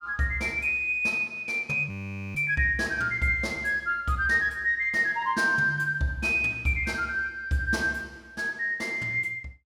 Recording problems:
audio freezing; at 2 s

